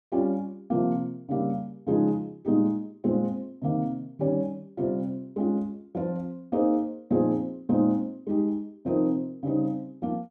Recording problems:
none

